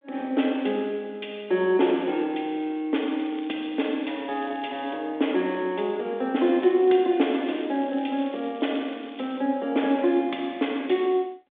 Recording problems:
telephone audio; 220 Hz to 3.6 kHz, G.726
crackling; from 3 to 5 s, at 6.5 s and from 7.5 to 9.5 s; loose cable, SNR 24 dB

